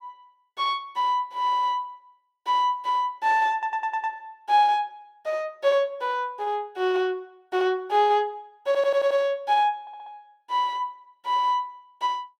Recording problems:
stutter; at 3.5 s, at 8.5 s and at 10 s

